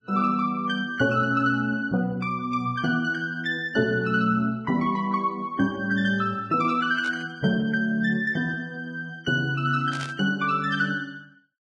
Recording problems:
codec artefacts; Vorbis, log-spectral distance 2 dB, nothing above 10.4 kHz
burst of static; at 7 s and at 10 s; peak -9 dB vs average level

